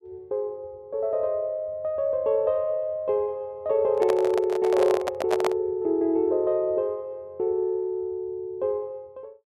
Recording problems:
handling noise; from 4 to 5.5 s; peak +3 dB vs average level

